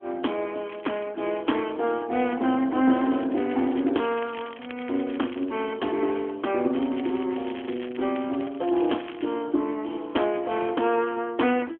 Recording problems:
phone line; 220 Hz to 3.3 kHz, AMR-NB
crackling; at 0.5 s, from 3 to 5.5 s and from 6.5 to 9.5 s; loose cable, SNR 19 dB

